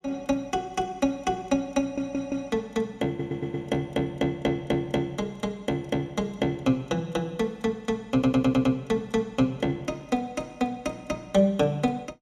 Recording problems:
audio stuttering; at 2 s, at 3 s and at 8 s

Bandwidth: 15.5 kHz